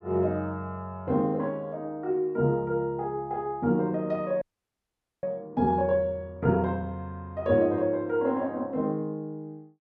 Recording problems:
frozen audio; at 4.5 s for 1 s

